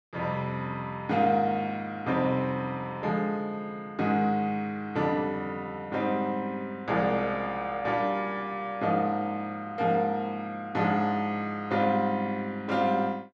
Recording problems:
none

